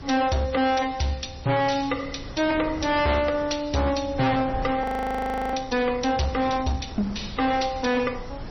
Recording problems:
lossy codec; MP3, log-spectral distance 8 dB, nothing above 5.8 kHz
distorted audio; hard clipping, uneven, signal-to-distortion ratio 6 dB
hiss; SNR 27 dB
wind on the microphone; below 450 Hz, SNR 15 dB
audio freezing; at 5 s for 0.5 s

